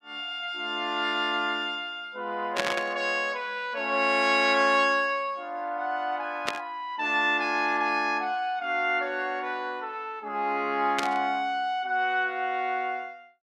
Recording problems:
static burst; at 2.5 s, at 6.5 s and at 11 s; peak +3 dB vs average level

